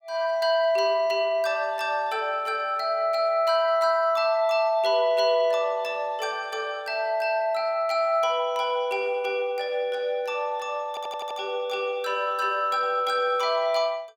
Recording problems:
audio stuttering; at 11 s

